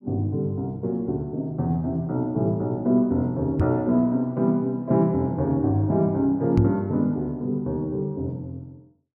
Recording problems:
knock on the microphone; at 3.5 s and at 6.5 s; peak +6 dB vs average level

